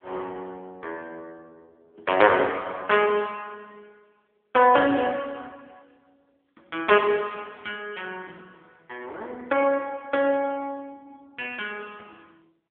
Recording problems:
telephone audio; 340 Hz to 3.4 kHz, AMR-NB

